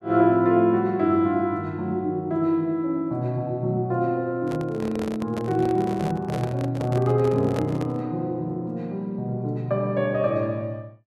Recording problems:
microphone handling noise; from 4.5 to 8 s; peak -3 dB vs average level

